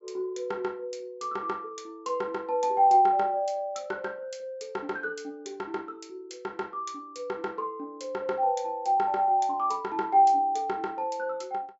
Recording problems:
treble missing; nothing above 8 kHz

